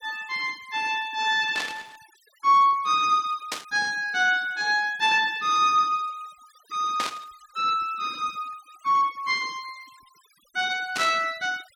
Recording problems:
denoising artefacts; signal-to-artefact ratio 24 dB
static burst; 4 times, first at 1.5 s; peak -1 dB vs average level

